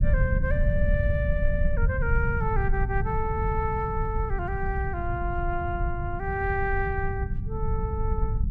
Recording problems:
rumble; below 100 Hz, SNR -1 dB

